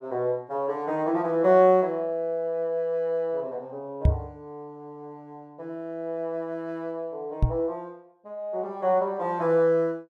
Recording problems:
microphone bump; at 4 s and at 7.5 s; peak +9 dB vs average level

